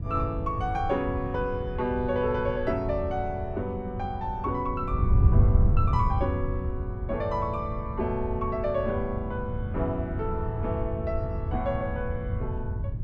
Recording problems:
wind on the microphone; below 110 Hz, SNR 0 dB

